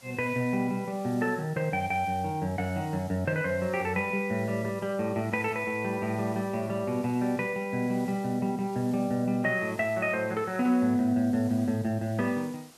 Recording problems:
hiss; slope -2 dB per octave, SNR 23 dB

